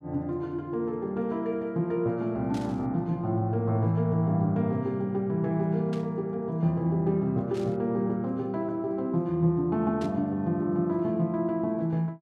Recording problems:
burst of static; 4 times, first at 2.5 s; peak -13 dB vs average level

